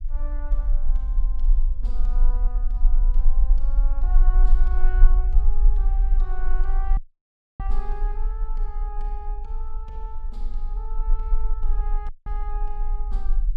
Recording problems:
rumble; below 36 Hz, strongest tone 18 Hz, SNR -16 dB
audio cutting out; at 7 s for 0.5 s and at 12 s

